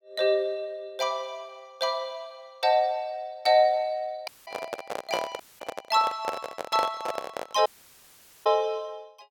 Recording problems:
dropout; at 4.5 s, at 5.5 s and at 7.5 s for 1 s
microphone handling noise; from 4.5 to 7.5 s; peak +2 dB vs average level

